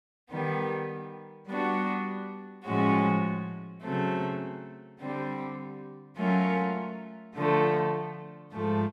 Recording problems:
none

